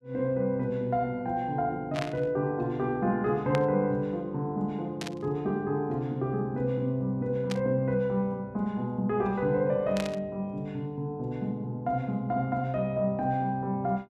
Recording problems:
static burst; 5 times, first at 2 s; peak -2 dB vs average level

